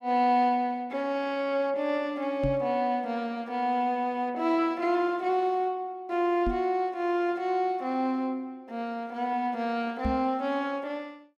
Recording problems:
knock on the microphone; at 2.5 s, at 6.5 s and at 10 s; peak +1 dB vs average level

